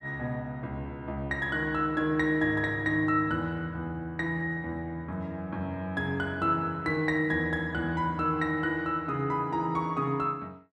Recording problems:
none

